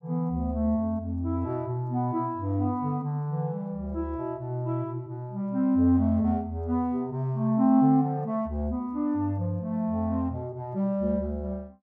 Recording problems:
none

